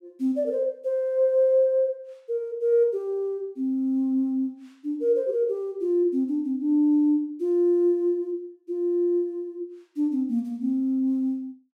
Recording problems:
none

